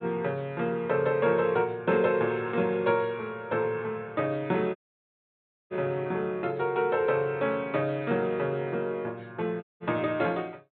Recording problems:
low-pass filter; nothing above 4 kHz
dropout; at 5 s for 1 s and at 9.5 s

